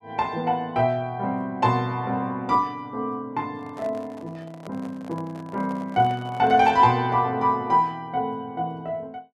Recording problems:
handling noise; from 3.5 to 7 s; peak -11 dB vs average level

